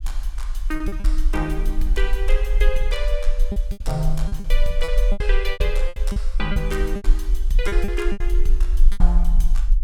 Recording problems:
low-frequency rumble; below 40 Hz, strongest tone 22 Hz, SNR -5 dB
packet loss; 10% of the sound replaced, filled with repeated pitch periods

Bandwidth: 17 kHz